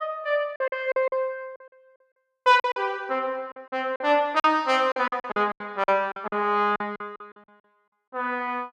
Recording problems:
packet loss; 13% of the sound replaced, filled with silence

